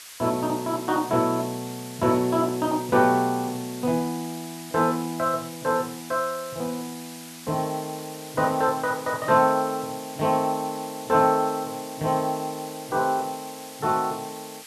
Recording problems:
background hiss; slope +3 dB per octave, SNR 15 dB

